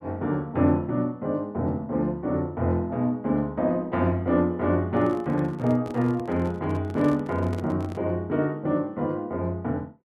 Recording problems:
microphone handling noise; from 5 to 8 s; peak -7 dB vs average level

